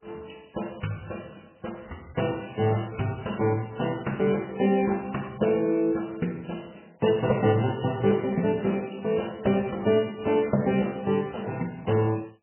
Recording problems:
lossy codec; MP3, log-spectral distance 8 dB, nothing above 3 kHz

